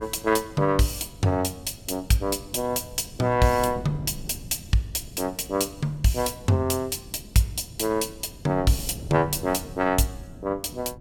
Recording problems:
wind on the microphone; below 230 Hz, SNR 17 dB

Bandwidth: 17 kHz